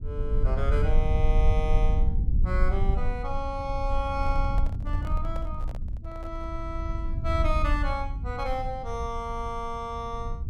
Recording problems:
low-frequency rumble; below 64 Hz, SNR -3 dB
handling noise; from 4 to 6.5 s; peak -7 dB vs average level

